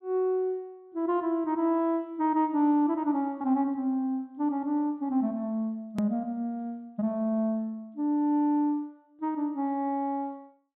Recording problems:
low-pass filter; nothing above 4 kHz
hard cut with a click; at 6 s

